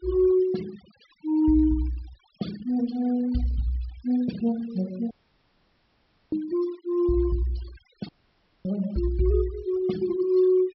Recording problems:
low-pass filter; nothing above 5.6 kHz
noise reduction artefacts; signal-to-artefact ratio 20 dB
audio cutting out; at 5 s for 1 s and at 8 s for 0.5 s

